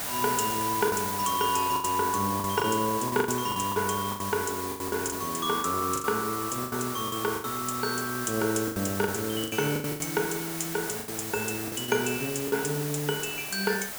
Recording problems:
hiss; SNR 5 dB
lost packets; 11% of the sound replaced, filled with the last packet

